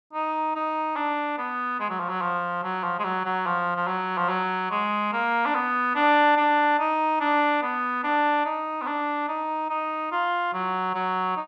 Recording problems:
none

